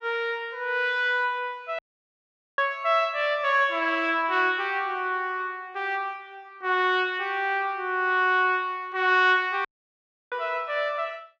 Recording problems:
dropout; at 2 s for 1 s and at 9.5 s for 0.5 s

